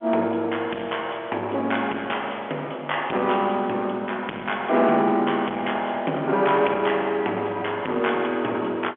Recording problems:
phone line; 220 Hz to 3.4 kHz, G.711
distortion; soft clipping, signal-to-distortion ratio 13 dB

